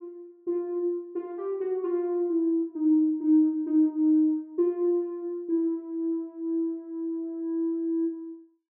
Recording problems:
none

